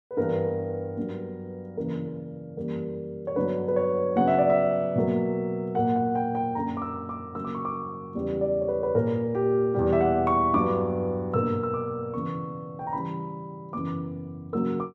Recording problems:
none

